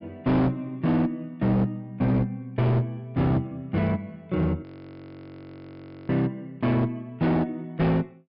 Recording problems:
low-pass filter; nothing above 5.5 kHz
distortion; hard clipping, uneven, signal-to-distortion ratio 7 dB
frozen audio; at 4.5 s for 1.5 s

